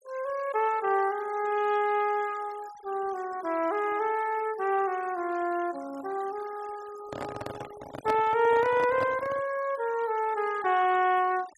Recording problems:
noise reduction artefacts; signal-to-artefact ratio 21 dB
handling noise; from 7 to 9.5 s; peak -2 dB vs average level

